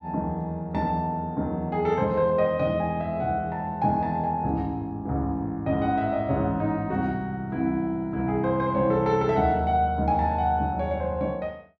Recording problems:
none

